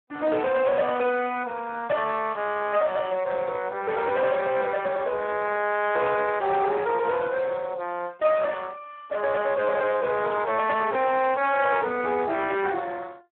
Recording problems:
telephone audio; 260 Hz to 3 kHz, Speex
distortion; hard clipping, uneven, signal-to-distortion ratio 11 dB

